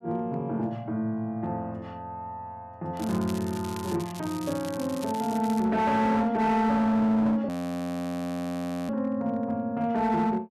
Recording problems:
distortion; hard clipping, signal-to-distortion ratio 12 dB
crackle; from 3 to 5.5 s; loose cable, SNR 16 dB
audio freezing; at 7.5 s for 1.5 s

